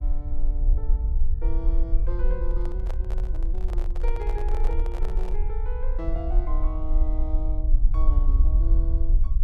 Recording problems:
rumble; below 46 Hz, SNR -12 dB
microphone handling noise; from 2.5 to 5.5 s; peak +2 dB vs average level

